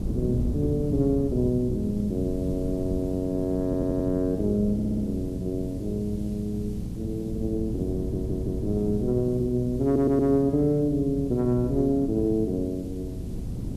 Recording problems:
hum; 60 Hz, harmonics up to 540 Hz, SNR 12 dB
background hiss; SNR 29 dB
wind noise; below 200 Hz, SNR 9 dB
stutter; 4 times, first at 3.5 s

